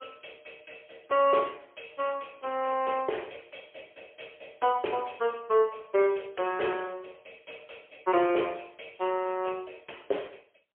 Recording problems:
phone line; 300 Hz to 3.3 kHz, AMR-NB, then MP3

